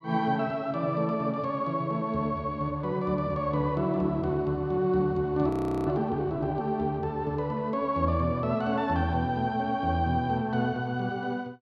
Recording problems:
frozen audio; at 5.5 s

